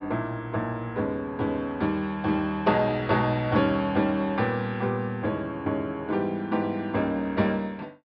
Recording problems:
treble missing; nothing above 5.5 kHz

